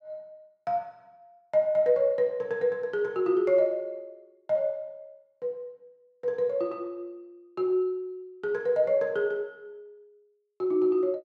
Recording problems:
none

